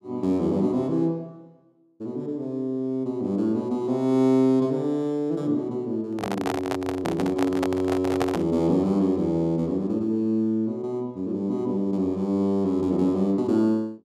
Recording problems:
microphone handling noise; from 6 to 8.5 s; peak +1 dB vs average level

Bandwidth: 13.5 kHz